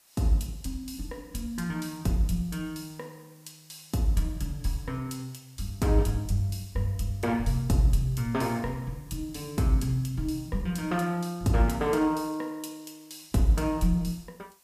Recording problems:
hiss; slope 0 dB per octave, SNR 29 dB

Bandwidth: 15 kHz